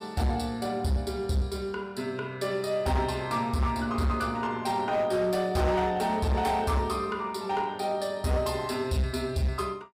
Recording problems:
distorted audio; hard clipping, signal-to-distortion ratio 10 dB

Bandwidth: 15.5 kHz